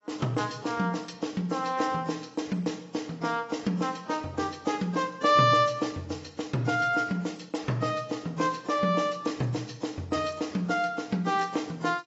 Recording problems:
codec artefacts; AAC, log-spectral distance 4 dB, nothing above 7.6 kHz

